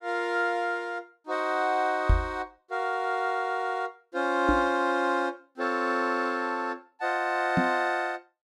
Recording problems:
microphone thump; at 2 s, at 4.5 s and at 7.5 s; peak +7 dB vs average level

